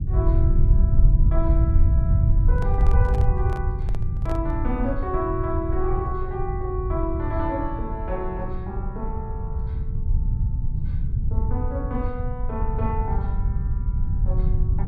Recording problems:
low-frequency rumble; below 90 Hz, SNR -6 dB
handling noise; from 2.5 to 4.5 s; peak -3 dB vs average level

